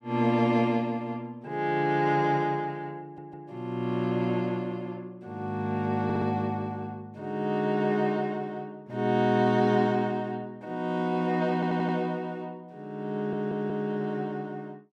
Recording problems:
stutter; 4 times, first at 3 s

